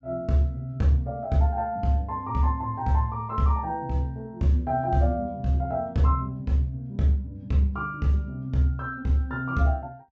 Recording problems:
treble cut off; nothing above 8 kHz

